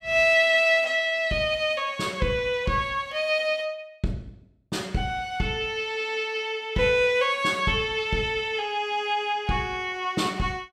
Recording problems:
none

